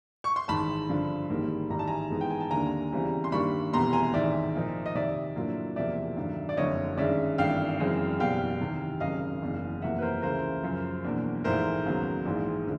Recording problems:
none

